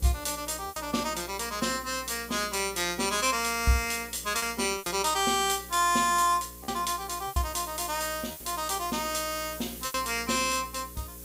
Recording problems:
mains hum; 60 Hz, harmonics up to 540 Hz, SNR 21 dB
background hiss; SNR 15 dB
lost packets; 4% of the sound replaced, filled with repeated pitch periods

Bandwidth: 15.5 kHz